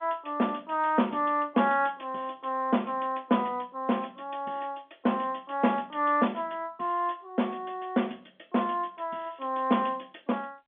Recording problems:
telephone audio; 190 Hz to 3.5 kHz, G.711

